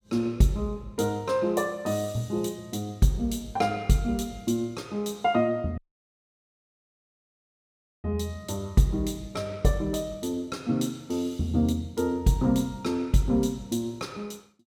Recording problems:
audio cutting out; at 6 s for 2.5 s

